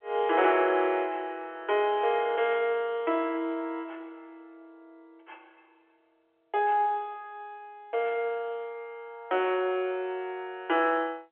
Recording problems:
phone line; 280 Hz to 3.4 kHz, G.711

